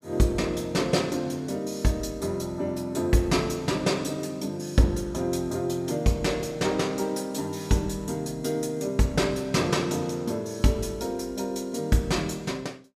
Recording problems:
none

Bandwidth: 15 kHz